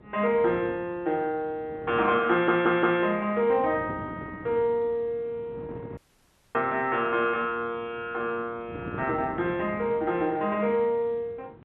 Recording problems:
phone line; 260 Hz to 3.3 kHz, G.711
wind noise; below 430 Hz, SNR 17 dB
stutter; at 2.5 s
dropout; at 6 s for 0.5 s

